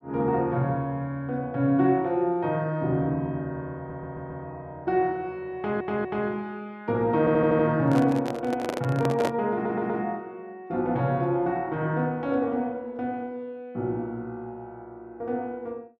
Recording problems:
audio stuttering; 4 times, first at 4 s
microphone handling noise; from 8 to 9.5 s; peak +2 dB vs average level

